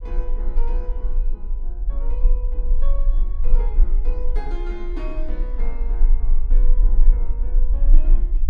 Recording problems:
low-frequency rumble; below 32 Hz, strongest tone 20 Hz, SNR -15 dB

